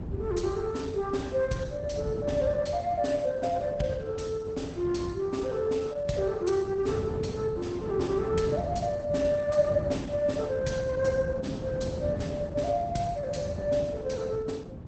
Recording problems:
lossy compression; Opus, log-spectral distance 3 dB, nothing above 8 kHz
rumble; below 200 Hz, SNR 7 dB

